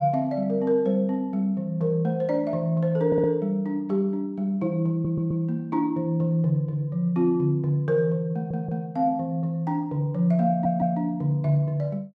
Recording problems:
audio stuttering; 4 times, first at 3 s

